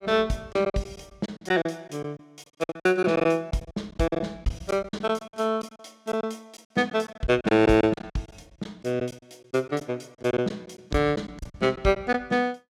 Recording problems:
lost packets; 13% of the sound replaced, filled with silence

